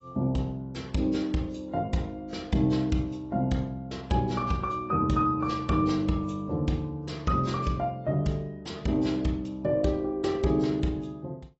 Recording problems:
lossy codec; AAC, log-spectral distance 2 dB, nothing above 7.8 kHz

